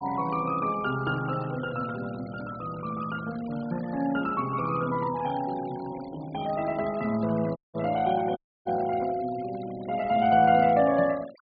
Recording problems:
low-pass filter; nothing above 4.8 kHz
denoising artefacts; signal-to-artefact ratio 19 dB
dropout; at 7.5 s and at 8.5 s

